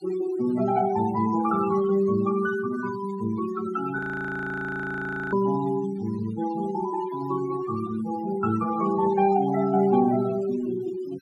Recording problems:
noise reduction artefacts; signal-to-artefact ratio 14 dB
audio freezing; at 4 s for 1.5 s

